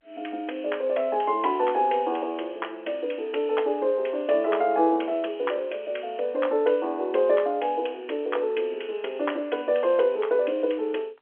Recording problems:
phone line; 280 Hz to 3.3 kHz, G.711

